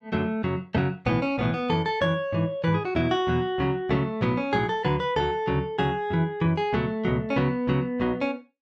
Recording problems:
none

